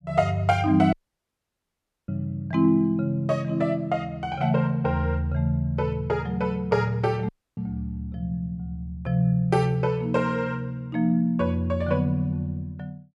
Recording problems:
dropout; at 1 s for 1 s and at 7.5 s

